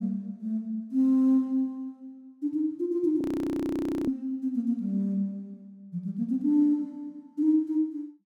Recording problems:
audio freezing; at 3 s for 1 s

